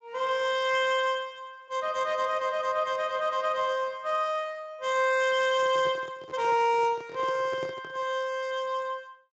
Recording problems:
lossy codec; Speex, log-spectral distance 3 dB, nothing above 7.3 kHz
microphone handling noise; from 5.5 to 8 s; peak -8 dB vs average level

